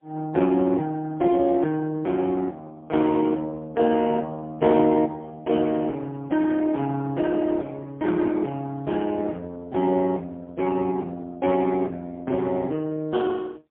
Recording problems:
telephone audio; 220 Hz to 2.2 kHz, AMR-NB, then MP3

